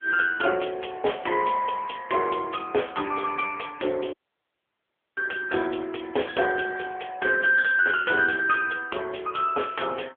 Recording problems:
telephone audio; 280 Hz to 3.3 kHz, AMR-NB
dropout; at 4 s for 1 s

